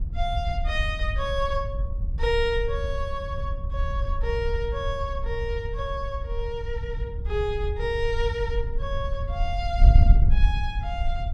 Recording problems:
wind noise; below 68 Hz, SNR -2 dB

